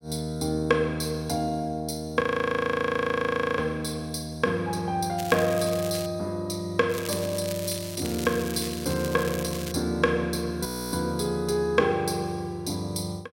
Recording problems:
frozen audio; at 2 s for 1.5 s and at 11 s
crackling; at 5 s and from 7 to 9.5 s; loose cable, SNR 11 dB

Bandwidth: 16 kHz